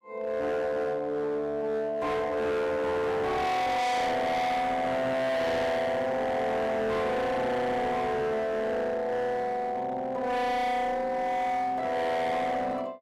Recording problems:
distortion; hard clipping, signal-to-distortion ratio 6 dB

